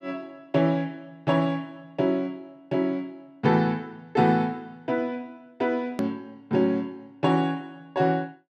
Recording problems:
edit click; at 6 s

